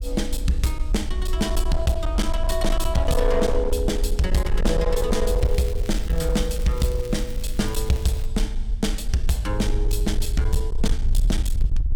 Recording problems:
distorted audio; hard clipping, uneven, signal-to-distortion ratio 11 dB
rumble; below 52 Hz, SNR 2 dB
crackling; from 5.5 to 8.5 s; loose cable, SNR 19 dB

